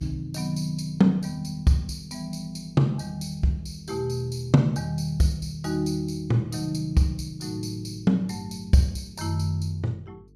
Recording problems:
hum; 50 Hz, harmonics up to 450 Hz, SNR 28 dB

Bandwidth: 14.5 kHz